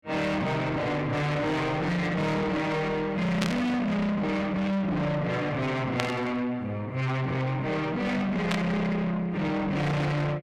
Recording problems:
distorted audio; soft clipping, signal-to-distortion ratio 6 dB
static burst; at 3.5 s, at 6 s and at 8.5 s; peak +2 dB vs average level

